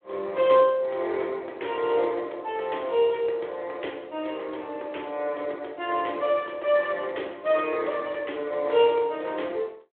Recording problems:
phone line; 300 Hz to 3.5 kHz, Speex

